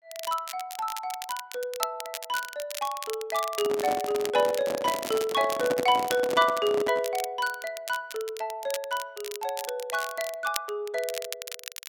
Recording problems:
crackling; vinyl, SNR 10 dB
handling noise; from 3.5 to 7 s; peak +2 dB vs average level

